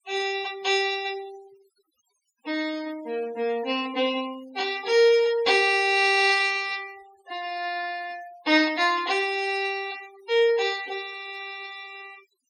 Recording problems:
denoising artefacts; signal-to-artefact ratio 20 dB

